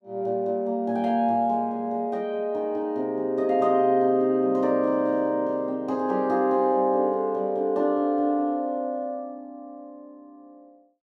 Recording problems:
none

